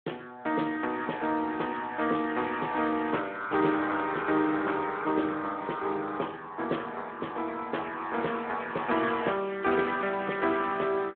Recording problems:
telephone audio; 260 Hz to 3.4 kHz, Speex

